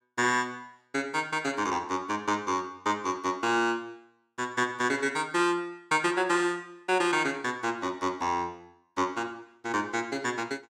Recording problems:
none

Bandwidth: 17.5 kHz